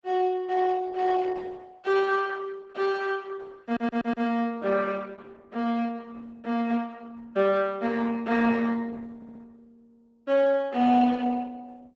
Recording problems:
codec artefacts; Opus, log-spectral distance 3 dB, nothing above 7.3 kHz
audio stuttering; at 3.5 s and at 9 s

